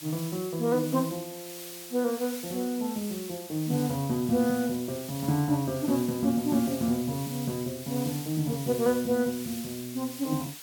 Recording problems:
background hiss; slope +2 dB per octave, SNR 11 dB

